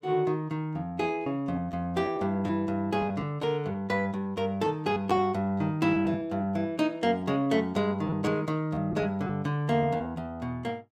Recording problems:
lost packets; 6% of the sound replaced, filled with repeated pitch periods

